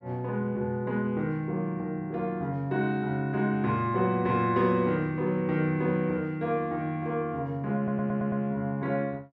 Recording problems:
stutter; at 8 s

